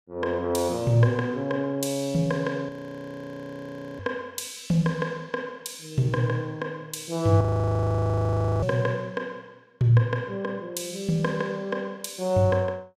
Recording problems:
audio freezing; at 2.5 s for 1.5 s and at 7.5 s for 1 s

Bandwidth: 15.5 kHz